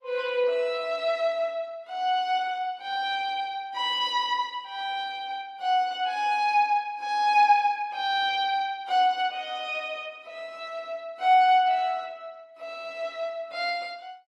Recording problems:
lossy codec; AAC, then Opus, log-spectral distance 2 dB

